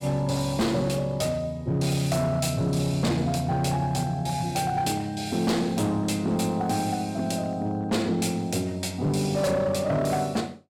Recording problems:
distorted audio; hard clipping, uneven, signal-to-distortion ratio 11 dB

